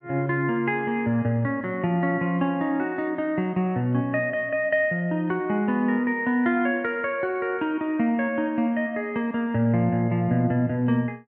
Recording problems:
none

